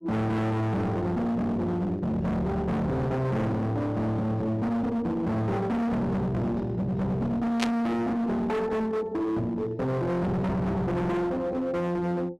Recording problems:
distorted audio; hard clipping, uneven, signal-to-distortion ratio 6 dB
burst of static; at 7.5 s; peak +3 dB vs average level

